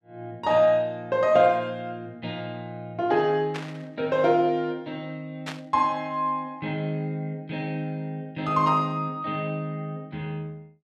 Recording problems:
static burst; at 3.5 s and at 5.5 s; peak -4 dB vs average level

